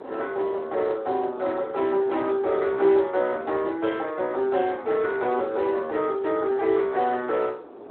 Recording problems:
telephone audio; 340 Hz to 3.7 kHz, Speex
wind on the microphone; below 670 Hz, SNR 16 dB

